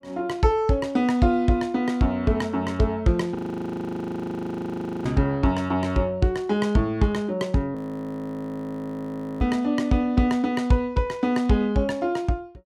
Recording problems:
audio freezing; at 3.5 s for 1.5 s and at 8 s for 1.5 s

